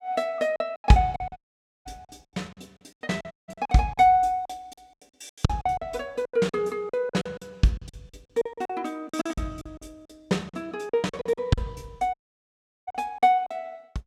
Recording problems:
lost packets; 17% of the sound replaced, filled with silence
dropout; at 1.5 s, at 3.5 s and at 12 s for 0.5 s

